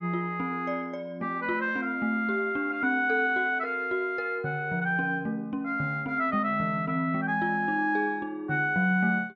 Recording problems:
none

